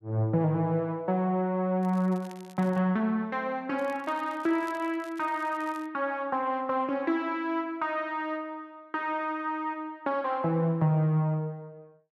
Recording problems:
crackling; at 2 s and from 4 to 6 s; loose cable, SNR 26 dB

